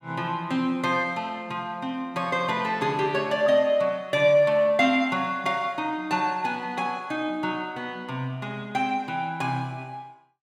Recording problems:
none

